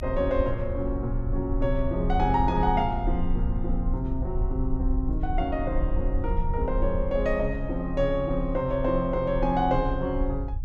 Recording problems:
low-frequency rumble; below 60 Hz, strongest tone 30 Hz, SNR 4 dB

